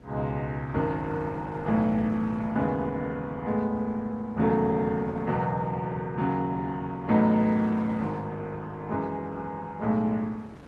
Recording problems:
codec artefacts; Opus, log-spectral distance 2 dB
wind on the microphone; below 540 Hz, SNR 23 dB

